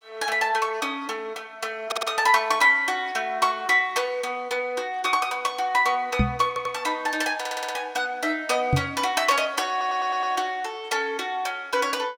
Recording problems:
stutter; 4 times, first at 2 s
microphone thump; at 6 s and at 8.5 s; peak +6 dB vs average level

